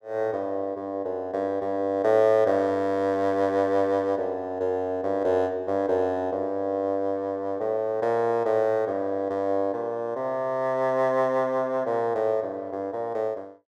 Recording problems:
none

